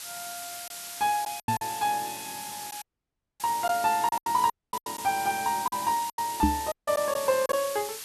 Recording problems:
hiss; slope +3 dB per octave, SNR 9 dB
lost packets; 8% of the sound replaced, filled with silence
microphone thump; at 1.5 s and at 6.5 s; peak +8 dB vs average level
audio cutting out; at 3 s for 0.5 s, at 4.5 s and at 6.5 s

